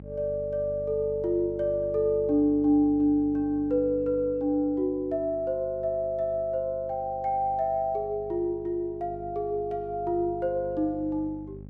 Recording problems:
hum; 50 Hz, harmonics up to 600 Hz, SNR 18 dB

